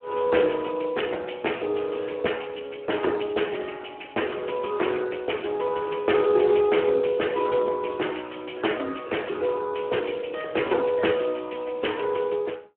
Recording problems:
telephone audio; 260 Hz to 3.1 kHz, Speex

